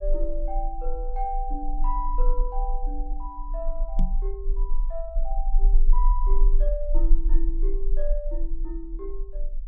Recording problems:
rumble; below 34 Hz, strongest tone 20 Hz, SNR -7 dB
knock on the microphone; at 4 s; peak +8 dB vs average level

